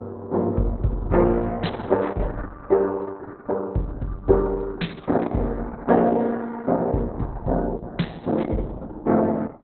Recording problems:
lossy codec; Opus, log-spectral distance 3 dB, nothing above 4.1 kHz

